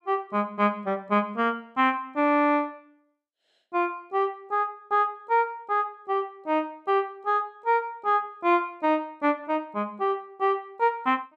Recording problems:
none

